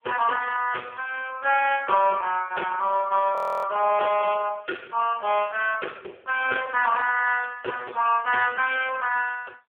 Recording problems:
telephone audio; 370 Hz to 3.3 kHz, AMR-NB
frozen audio; at 3.5 s

